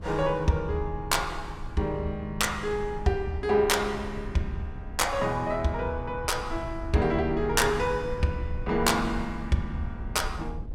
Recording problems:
wind noise; below 96 Hz, SNR 12 dB

